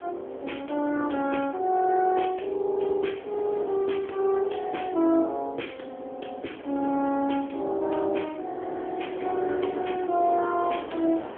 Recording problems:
phone line; 240 Hz to 3.3 kHz, AMR-NB
wind noise; below 780 Hz, SNR 15 dB

